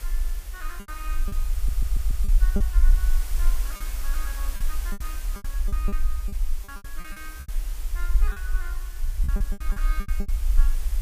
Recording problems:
background hiss; slope -1 dB per octave, SNR -1 dB
rumble; below 46 Hz, SNR -15 dB
lost packets; 12% of the sound replaced, filled with repeated pitch periods
audio stuttering; at 1.5 s

